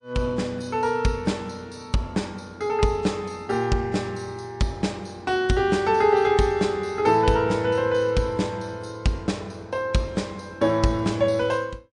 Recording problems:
codec artefacts; MP3, log-spectral distance 2 dB, nothing above 8.2 kHz

